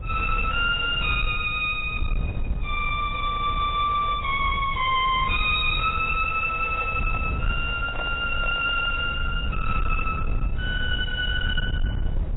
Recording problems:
codec artefacts; AAC, log-spectral distance 4 dB, nothing above 3.8 kHz
distortion; soft clipping, signal-to-distortion ratio 11 dB
low-frequency rumble; below 88 Hz, SNR 7 dB
handling noise; from 6.5 to 9 s; peak -8 dB vs average level

